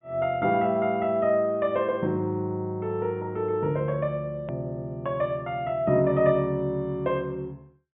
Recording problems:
treble cut off; nothing above 3.4 kHz
edit click; at 4.5 s

